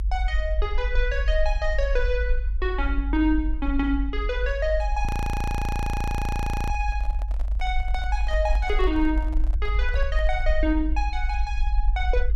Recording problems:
low-frequency rumble; below 52 Hz, SNR -1 dB
handling noise; from 5 to 11 s; peak -10 dB vs average level
audio freezing; at 5 s for 1.5 s

